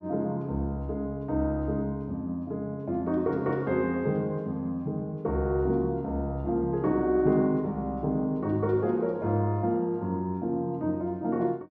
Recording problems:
none

